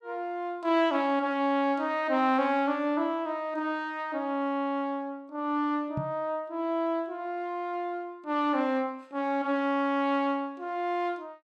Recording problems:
knock on the microphone; at 6 s; peak -1 dB vs average level

